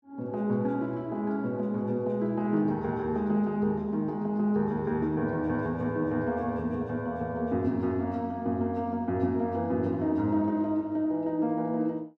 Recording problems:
none

